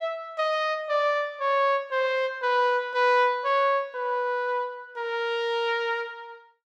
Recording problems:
none

